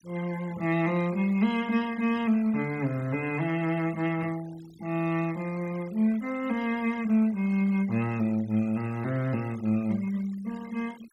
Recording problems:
denoising artefacts; signal-to-artefact ratio 20 dB

